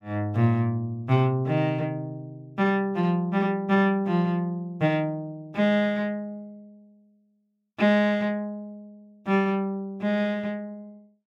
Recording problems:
none

